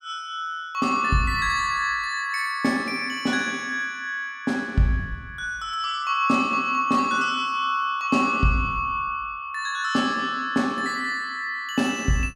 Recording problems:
none

